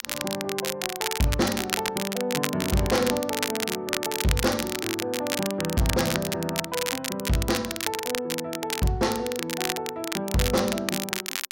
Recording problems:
distortion; hard clipping, signal-to-distortion ratio 12 dB
crackling; vinyl, SNR 2 dB

